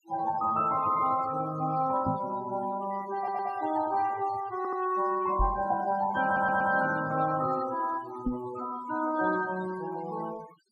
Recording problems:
noise reduction artefacts; signal-to-artefact ratio 15 dB
knock on the microphone; at 2 s, at 5.5 s and at 8.5 s; peak +3 dB vs average level
stutter; at 3 s, at 4.5 s and at 6.5 s

